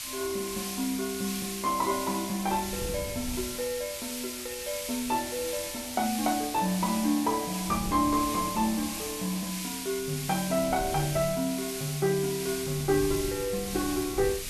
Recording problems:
hiss; SNR 5 dB
wind noise; below 180 Hz, SNR 15 dB

